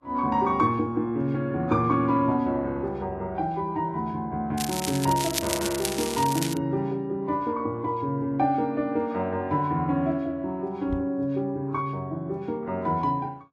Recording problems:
lossy codec; Vorbis, log-spectral distance 3 dB
crackling; from 4.5 to 6.5 s; loose cable, SNR 4 dB
knock on the microphone; at 11 s; peak -2 dB vs average level

